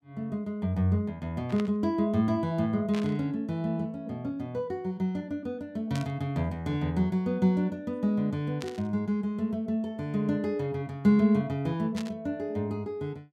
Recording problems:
static burst; 5 times, first at 1.5 s; peak -7 dB vs average level

